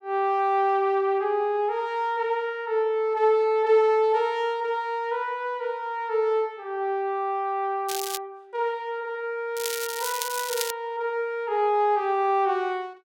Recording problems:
crackling; at 8 s and from 9.5 to 11 s; loose cable, SNR 7 dB

